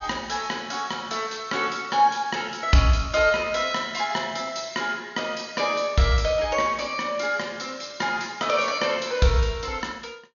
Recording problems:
low-pass filter; nothing above 6.9 kHz

